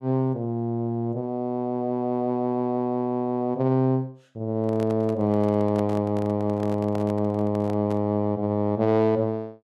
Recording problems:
microphone handling noise; from 4.5 to 8 s; peak -8 dB vs average level

